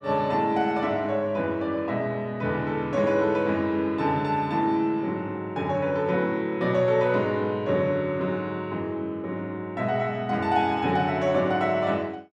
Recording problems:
none

